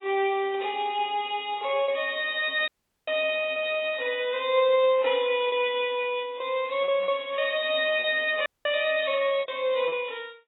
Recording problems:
codec artefacts; AAC, then AAC, log-spectral distance 4 dB, nothing above 3.5 kHz
packet loss; 5% of the sound replaced, filled with repeated pitch periods
dropout; at 2.5 s and at 8.5 s

